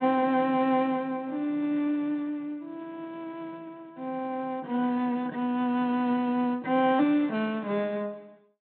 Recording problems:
treble cut off; nothing above 4 kHz

